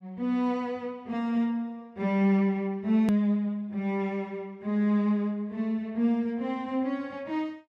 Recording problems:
click at an edit; at 3 s

